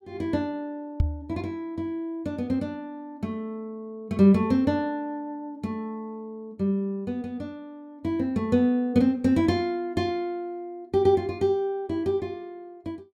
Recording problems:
microphone bump; at 1 s; peak +7 dB vs average level

